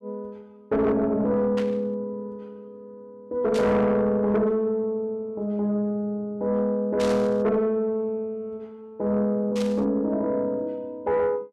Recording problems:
distorted audio; soft clipping, signal-to-distortion ratio 12 dB
burst of static; 4 times, first at 1.5 s; peak -6 dB vs average level

